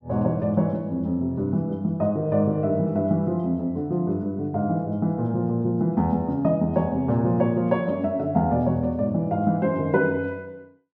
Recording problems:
none

